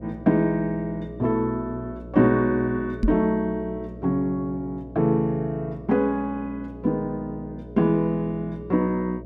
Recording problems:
electrical hum; 60 Hz, harmonics up to 660 Hz, SNR 16 dB
microphone thump; at 3 s; peak +5 dB vs average level

